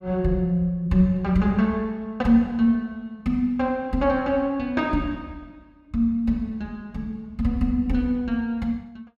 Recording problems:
none

